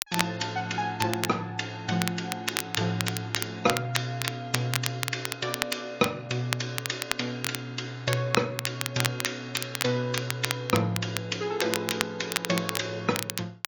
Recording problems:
lossy compression; MP3, log-spectral distance 3 dB
crackle; vinyl, SNR 3 dB

